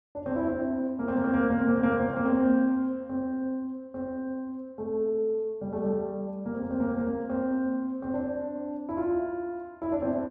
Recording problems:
none

